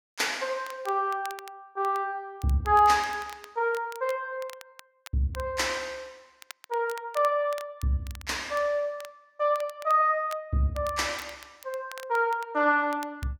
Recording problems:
crackling; vinyl, SNR 21 dB

